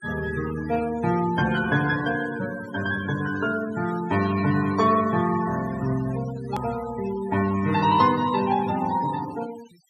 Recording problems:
denoising artefacts; signal-to-artefact ratio 14 dB
hard cut with a click; at 6.5 s

